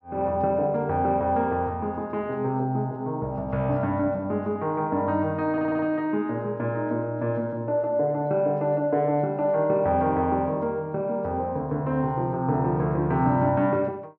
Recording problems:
audio stuttering; at 5.5 s

